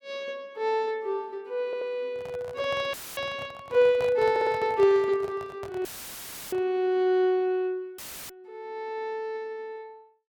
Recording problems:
stutter; at 1.5 s and at 4.5 s
handling noise; from 2 to 6.5 s; peak -8 dB vs average level
dropout; at 3 s, at 6 s for 0.5 s and at 8 s; filled with static

